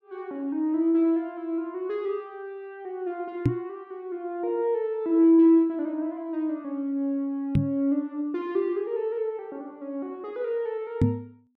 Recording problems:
microphone bump; at 3.5 s, at 7.5 s and at 11 s; peak +8 dB vs average level

